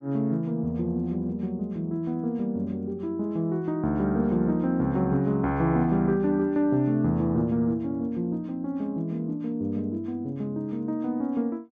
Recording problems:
none

